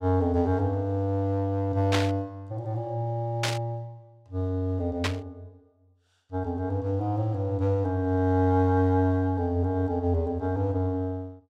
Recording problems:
static burst; at 2 s, at 3.5 s and at 5 s; peak +4 dB vs average level

